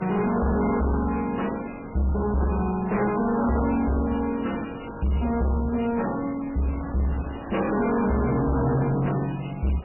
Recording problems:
codec artefacts; MP3, log-spectral distance 6 dB, nothing above 2.6 kHz
distortion; hard clipping, signal-to-distortion ratio 7 dB
wind on the microphone; below 1 kHz, SNR 17 dB

